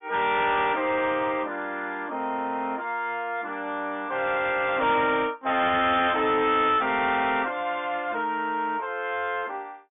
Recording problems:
treble cut off; nothing above 3.5 kHz
distorted audio; soft clipping, signal-to-distortion ratio 11 dB

